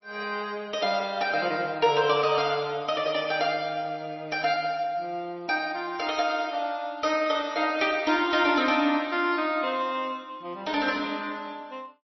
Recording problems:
lossy codec; MP3, log-spectral distance 3 dB, nothing above 5.5 kHz

